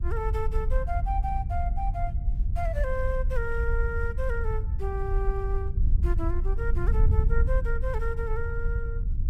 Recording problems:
wind on the microphone; below 66 Hz, SNR -5 dB

